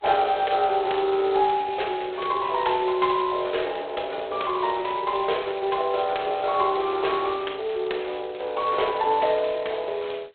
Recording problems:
phone line; 370 Hz to 3.9 kHz, G.726

